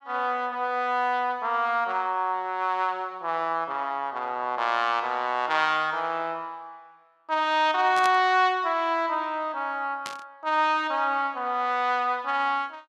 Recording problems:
static burst; at 8 s and at 10 s; peak -4 dB vs average level

